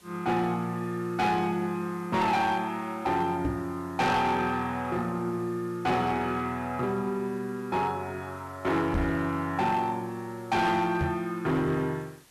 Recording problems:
distorted audio; hard clipping, signal-to-distortion ratio 10 dB
background hiss; slope -1 dB per octave, SNR 27 dB
knock on the microphone; at 3.5 s, at 9 s and at 11 s; peak +2 dB vs average level

